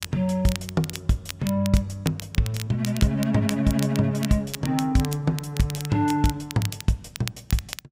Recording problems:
crackle; vinyl, SNR 12 dB

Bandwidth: 15.5 kHz